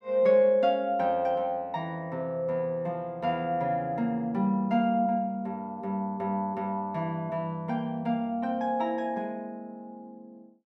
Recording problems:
none

